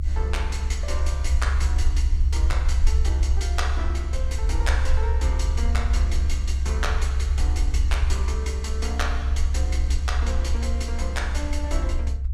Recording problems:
low-frequency rumble; below 68 Hz, SNR -8 dB

